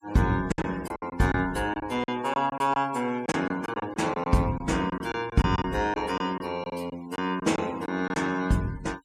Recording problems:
denoising artefacts; signal-to-artefact ratio 22 dB
lost packets; 10% of the sound replaced, filled with silence

